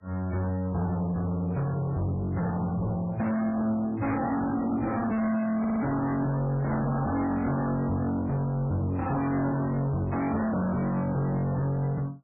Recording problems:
lossy codec; MP3, then MP3, log-spectral distance 3 dB, nothing above 2.2 kHz
distorted audio; soft clipping, signal-to-distortion ratio 6 dB
audio stuttering; at 5.5 s

